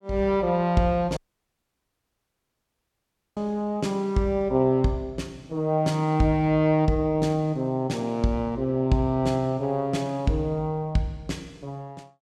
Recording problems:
audio cutting out; at 1 s for 2 s

